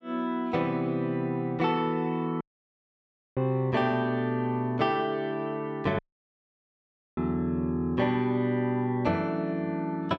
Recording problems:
audio cutting out; at 2.5 s for 1 s and at 6 s for 1 s

